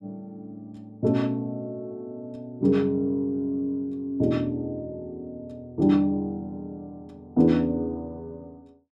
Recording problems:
none

